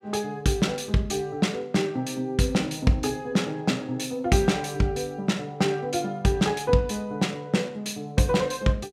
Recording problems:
none

